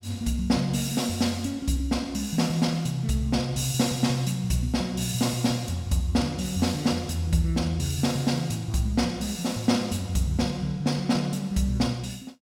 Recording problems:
none

